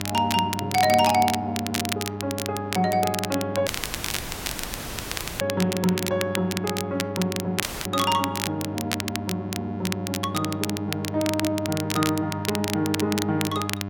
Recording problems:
mains hum; 50 Hz, harmonics up to 1.4 kHz, SNR 8 dB
crackling; vinyl, SNR 5 dB
audio cutting out; at 3.5 s for 1.5 s and at 7.5 s

